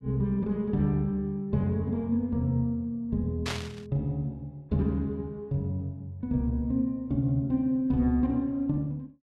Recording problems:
burst of static; at 3.5 s; peak -1 dB vs average level

